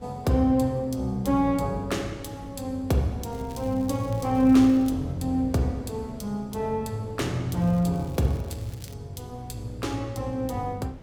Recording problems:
wind on the microphone; below 330 Hz, SNR 21 dB
crackle; from 3.5 to 5 s and from 7.5 to 9 s; loose cable, SNR 26 dB

